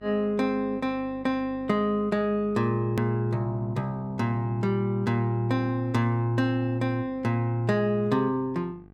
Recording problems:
electrical hum; 50 Hz, harmonics up to 1.6 kHz, SNR 23 dB
click at an edit; at 3 s

